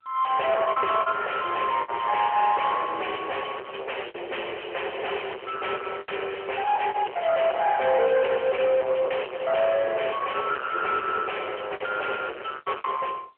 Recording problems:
telephone audio; 340 Hz to 3.2 kHz, AMR-NB
distorted audio; soft clipping, signal-to-distortion ratio 6 dB
lost packets; 5% of the sound replaced, filled with the last packet

